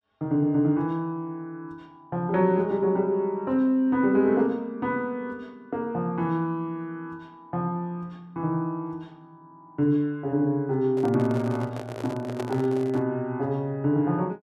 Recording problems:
handling noise; from 11 to 13 s; peak -3 dB vs average level

